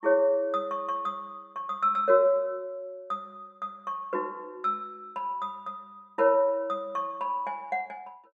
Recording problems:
none

